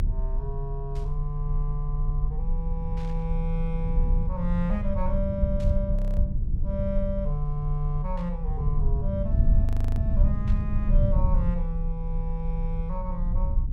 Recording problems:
rumble; below 68 Hz, strongest tone 30 Hz, SNR -4 dB
static burst; 5 times, first at 1 s; peak -12 dB vs average level
audio freezing; at 6 s and at 9.5 s

